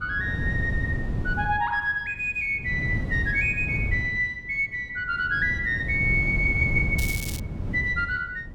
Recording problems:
wind noise; below 160 Hz, SNR 6 dB
crackling; at 7 s; loose cable, SNR 10 dB

